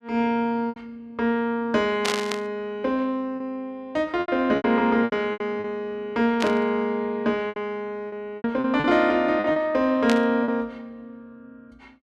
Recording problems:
lost packets; 8% of the sound replaced, filled with repeated pitch periods
burst of static; at 2 s, at 6.5 s and at 10 s; peak +2 dB vs average level

